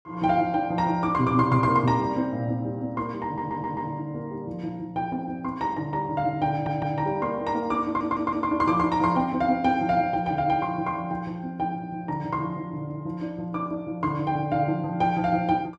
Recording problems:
audio stuttering; at 3.5 s, at 6.5 s and at 8 s

